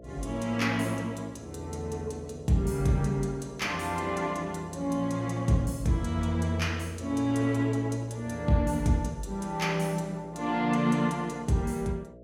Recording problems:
electrical hum; 60 Hz, harmonics up to 660 Hz, SNR 20 dB

